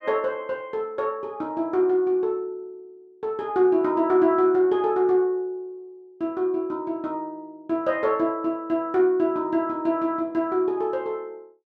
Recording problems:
none

